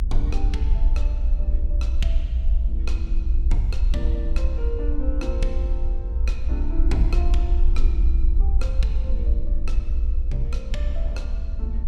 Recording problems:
low-frequency rumble; below 58 Hz, SNR -10 dB
wind noise; below 600 Hz, SNR 24 dB

